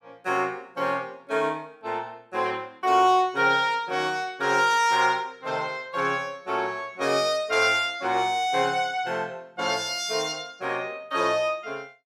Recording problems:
none

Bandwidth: 15.5 kHz